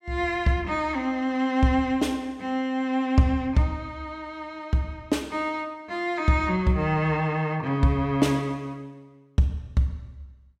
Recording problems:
none

